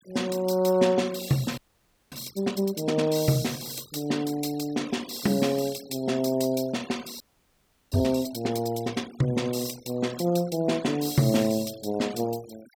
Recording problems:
denoising artefacts; signal-to-artefact ratio 19 dB
frozen audio; at 1.5 s for 0.5 s and at 7 s for 0.5 s

